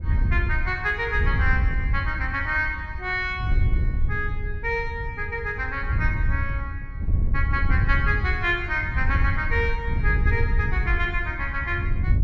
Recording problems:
wind noise; below 86 Hz, SNR 0 dB

